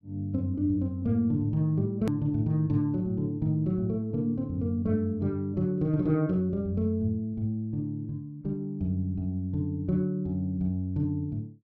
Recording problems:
edit click; at 2 s

